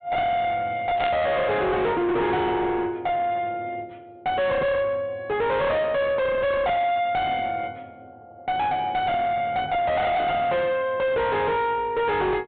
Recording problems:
treble missing; nothing above 4 kHz
distortion; soft clipping, signal-to-distortion ratio 6 dB
static burst; at 1 s; peak -6 dB vs average level

